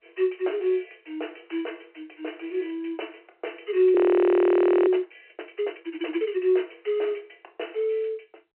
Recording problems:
telephone audio; 300 Hz to 3.1 kHz, G.711
frozen audio; at 4 s for 1 s

